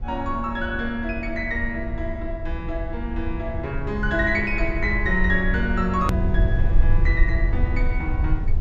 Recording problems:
treble missing; nothing above 8 kHz
low-frequency rumble; below 68 Hz, SNR 1 dB
click at an edit; at 6 s

